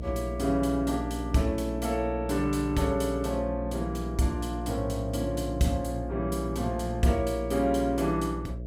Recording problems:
hum; 60 Hz, harmonics up to 660 Hz, SNR 7 dB

